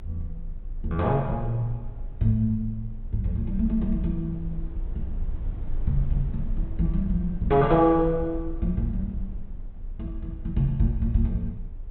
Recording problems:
treble missing; nothing above 4 kHz
low-frequency rumble; below 54 Hz, strongest tone 28 Hz, SNR 10 dB

